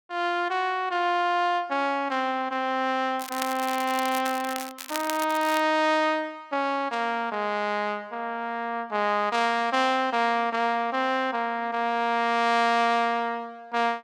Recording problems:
crackle; from 3 to 5.5 s; loose cable, SNR 11 dB

